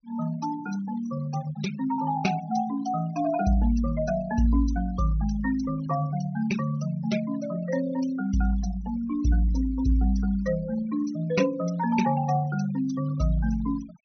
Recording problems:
low-pass filter; nothing above 6.1 kHz
noise reduction artefacts; signal-to-artefact ratio 15 dB

